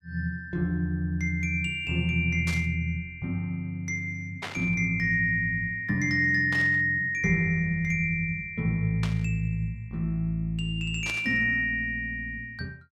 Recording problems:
burst of static; 5 times, first at 2.5 s; peak -4 dB vs average level

